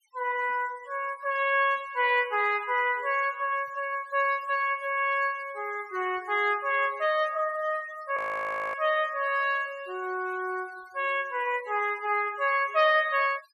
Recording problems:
noise reduction artefacts; signal-to-artefact ratio 23 dB
audio freezing; at 8 s for 0.5 s

